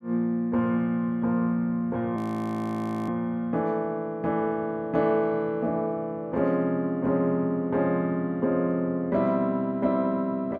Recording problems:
frozen audio; at 2 s for 1 s

